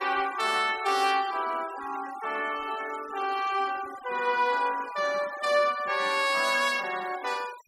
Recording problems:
denoising artefacts; signal-to-artefact ratio 17 dB

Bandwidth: 16.5 kHz